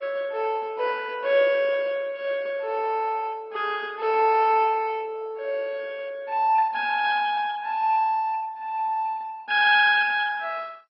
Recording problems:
lossy codec; MP2, log-spectral distance 3 dB, nothing above 5 kHz

